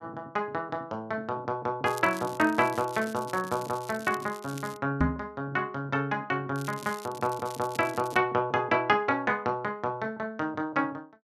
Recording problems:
crackling; from 2 to 5 s and from 6.5 to 8 s; loose cable, SNR 17 dB
microphone bump; at 5 s; peak +7 dB vs average level

